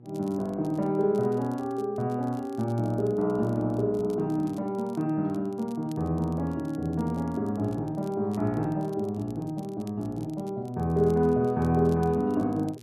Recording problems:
hum; 60 Hz, harmonics up to 840 Hz, SNR 22 dB
crackle; vinyl, SNR 29 dB

